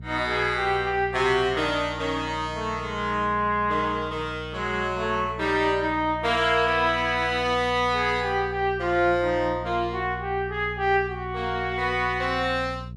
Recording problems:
electrical hum; 60 Hz, harmonics up to 420 Hz, SNR 14 dB

